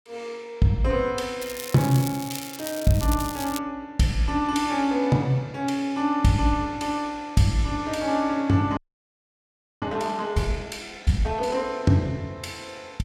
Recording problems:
crackling; from 1.5 to 3.5 s; loose cable, SNR 11 dB
audio freezing; at 9 s for 1 s

